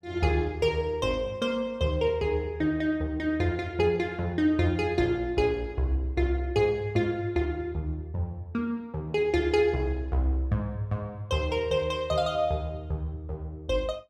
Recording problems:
none

